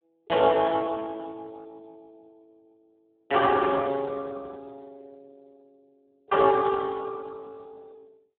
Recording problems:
phone line; 300 Hz to 2.8 kHz, Speex

